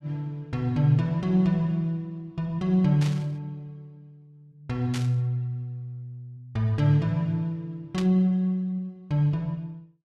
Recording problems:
static burst; at 3 s, at 5 s and at 8 s; peak -5 dB vs average level

